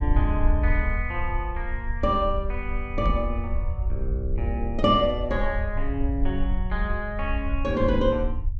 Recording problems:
treble missing; nothing above 8 kHz
rumble; below 66 Hz, SNR 2 dB
microphone bump; at 3 s; peak +6 dB vs average level

